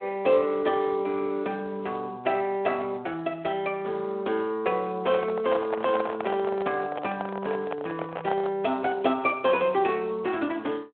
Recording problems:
phone line; 240 Hz to 3.5 kHz, Speex
microphone handling noise; from 5 to 8.5 s; peak +1 dB vs average level

